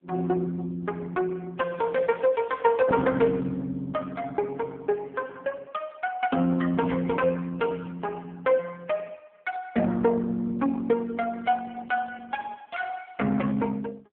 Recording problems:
phone line; 170 Hz to 2.9 kHz, AMR-NB
crackle; from 1.5 to 3 s; loose cable, SNR 28 dB

